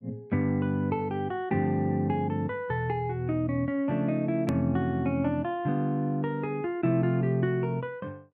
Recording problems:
edit click; at 4.5 s

